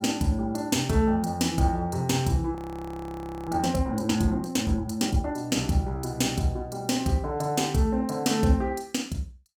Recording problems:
frozen audio; at 2.5 s for 1 s

